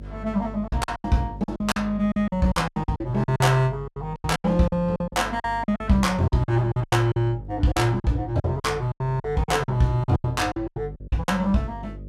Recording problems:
hum; 50 Hz, harmonics up to 600 Hz, SNR 15 dB
packet loss; 17% of the sound replaced, filled with silence

